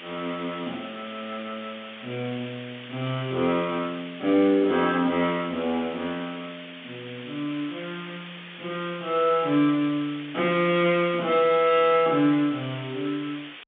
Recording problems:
phone line; 170 Hz to 3.5 kHz, G.711
background hiss; SNR 15 dB

